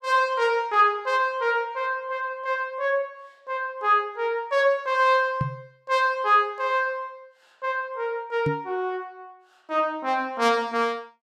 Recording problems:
microphone bump; at 5.5 s and at 8.5 s; peak +1 dB vs average level

